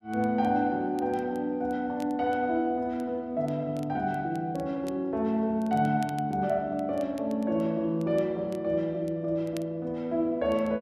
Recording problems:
crackling; vinyl, SNR 27 dB

